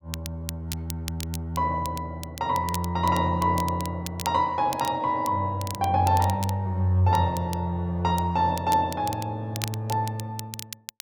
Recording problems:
crackle; vinyl, SNR 14 dB

